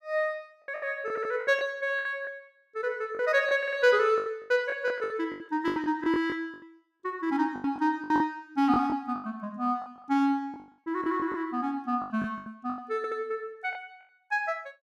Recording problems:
packet loss; 14% of the sound replaced, filled with the last packet
audio stuttering; at 1 s, at 3.5 s and at 13 s

